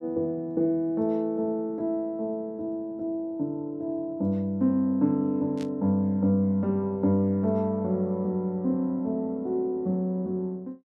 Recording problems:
burst of static; at 5.5 s; peak -13 dB vs average level

